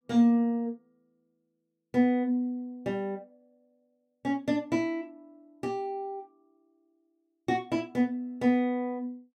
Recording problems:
none

